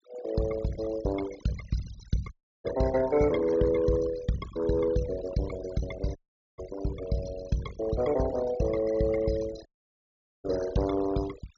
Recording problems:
treble cut off; nothing above 7.2 kHz
denoising artefacts; signal-to-artefact ratio 14 dB
audio cutting out; at 2.5 s, at 6 s and at 9.5 s for 1 s

